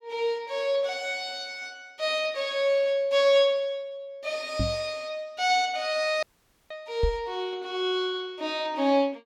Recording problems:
microphone thump; at 4.5 s and at 7 s; peak +3 dB vs average level
audio cutting out; at 6 s

